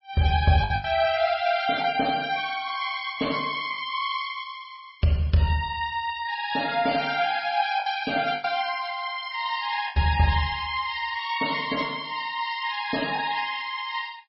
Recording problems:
codec artefacts; MP3, log-spectral distance 4 dB, nothing above 5.5 kHz
lost packets; 3% of the sound replaced, filled with the last packet

